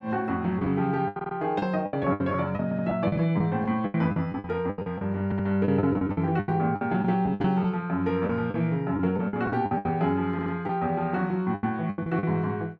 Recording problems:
lost packets; 14% of the sound replaced, filled with the last packet
audio stuttering; 4 times, first at 1 s

